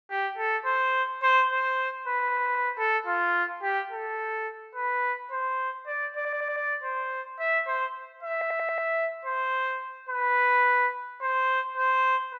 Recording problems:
audio stuttering; at 2 s, at 6 s and at 8.5 s

